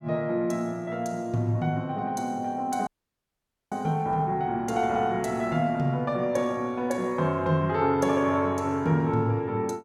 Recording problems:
audio cutting out; at 3 s for 1 s

